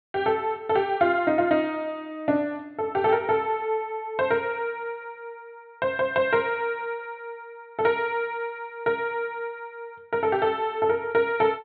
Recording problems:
treble cut off; nothing above 4.4 kHz

